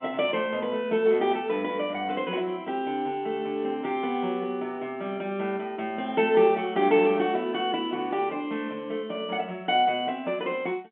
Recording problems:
phone line; 240 Hz to 3.5 kHz, G.711

